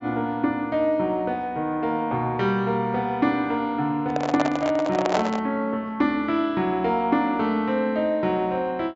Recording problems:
low-pass filter; nothing above 8 kHz
microphone handling noise; from 4 to 5.5 s; peak +4 dB vs average level

